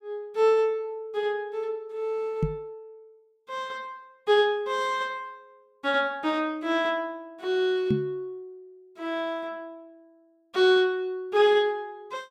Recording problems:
knock on the microphone; at 2.5 s and at 8 s; peak +5 dB vs average level

